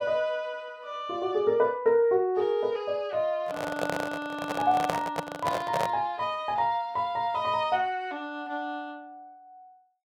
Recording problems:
microphone handling noise; from 3.5 to 6 s; peak +3 dB vs average level

